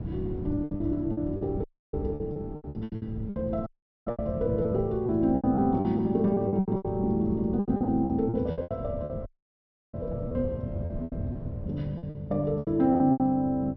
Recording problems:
treble cut off; nothing above 5.7 kHz
wind on the microphone; below 190 Hz, SNR 10 dB
packet loss; 17% of the sound replaced, filled with repeated pitch periods
audio cutting out; at 1.5 s, at 3.5 s and at 9.5 s for 0.5 s

